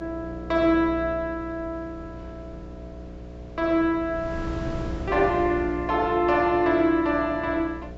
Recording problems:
treble missing; nothing above 7.7 kHz
hum; 60 Hz, harmonics up to 720 Hz, SNR 14 dB
wind on the microphone; below 270 Hz, SNR 18 dB

